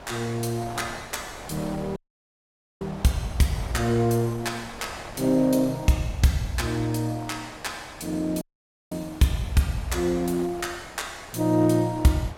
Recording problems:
wind noise; below 1.2 kHz, SNR 16 dB
dropout; at 2 s for 1 s and at 8.5 s for 0.5 s

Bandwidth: 16.5 kHz